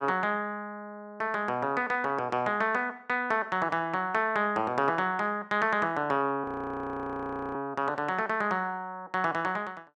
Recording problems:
audio freezing; at 6.5 s for 1 s

